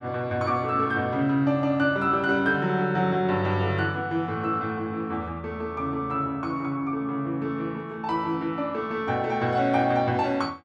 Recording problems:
none

